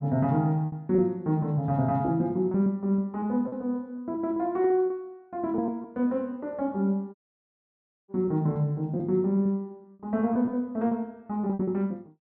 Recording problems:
packet loss; 7% of the sound replaced, filled with repeated pitch periods
audio cutting out; at 7 s for 1 s

